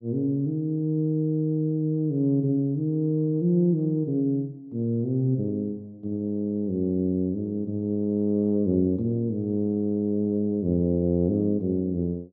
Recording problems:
low-pass filter; nothing above 8 kHz

